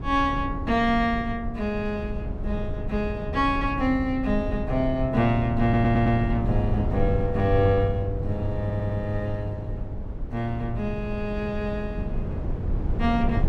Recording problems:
rumble; below 140 Hz, SNR 5 dB
stutter; at 5.5 s and at 8.5 s

